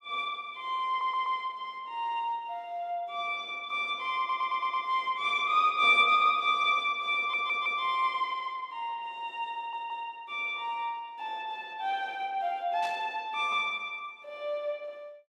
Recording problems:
stutter; 4 times, first at 1 s
static burst; at 13 s; peak -10 dB vs average level

